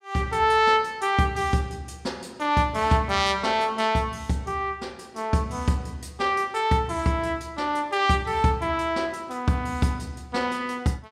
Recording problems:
none

